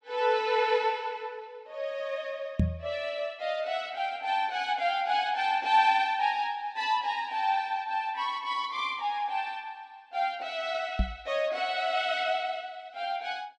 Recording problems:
microphone bump; at 2.5 s and at 11 s; peak +7 dB vs average level

